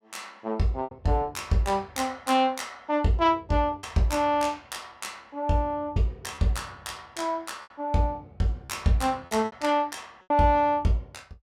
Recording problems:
lost packets; 4% of the sound replaced, filled with repeated pitch periods

